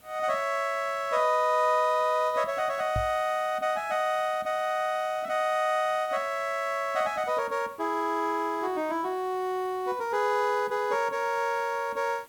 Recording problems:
background hiss; slope -3 dB per octave, SNR 27 dB
microphone thump; at 3 s; peak -1 dB vs average level

